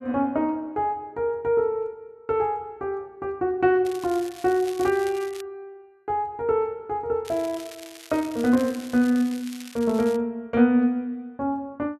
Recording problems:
crackling; from 4 to 5.5 s and from 7.5 to 10 s; loose cable, SNR 18 dB

